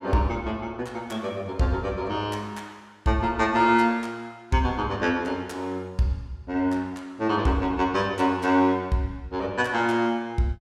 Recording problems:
none

